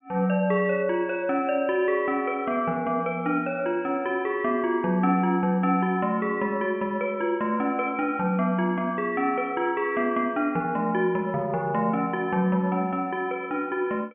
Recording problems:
low-pass filter; nothing above 3.1 kHz

